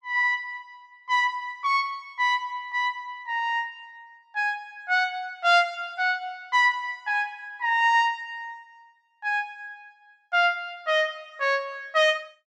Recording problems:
none

